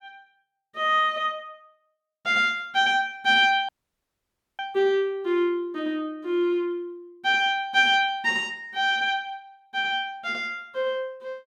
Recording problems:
audio cutting out; at 3.5 s for 1 s

